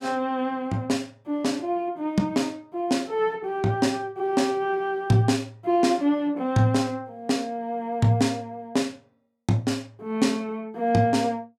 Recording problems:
none

